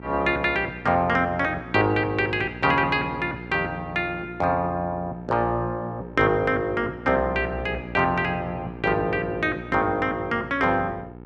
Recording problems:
hum; 60 Hz, harmonics up to 1.4 kHz, SNR 15 dB

